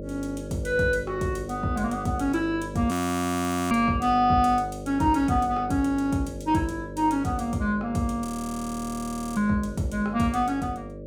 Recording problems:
electrical hum; 50 Hz, harmonics up to 600 Hz, SNR 12 dB
audio freezing; at 3 s for 1 s and at 8.5 s for 1 s

